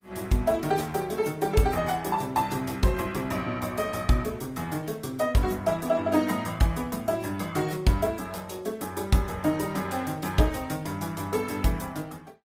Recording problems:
codec artefacts; AAC, then Opus, log-spectral distance 4 dB

